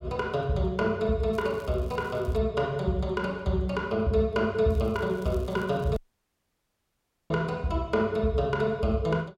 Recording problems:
crackle; from 1.5 to 2.5 s and from 4.5 to 6 s; loose cable, SNR 28 dB
audio cutting out; at 6 s for 1.5 s

